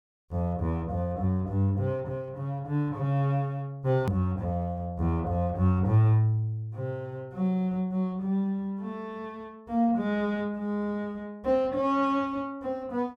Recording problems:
click at an edit; at 4 s

